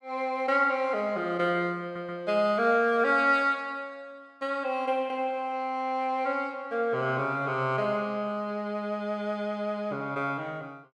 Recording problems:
audio stuttering; at 2 s

